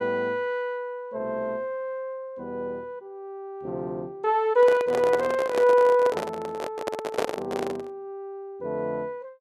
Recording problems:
handling noise; from 4.5 to 8 s; peak +4 dB vs average level

